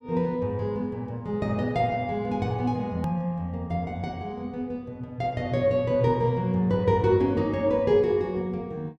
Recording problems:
hard cut with a click; at 3 s

